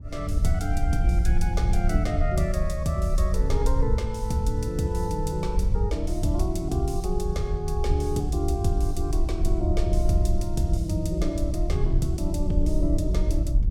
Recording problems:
wind on the microphone; below 66 Hz, SNR 0 dB

